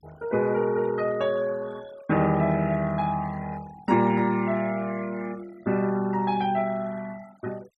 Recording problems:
noise reduction artefacts; signal-to-artefact ratio 22 dB

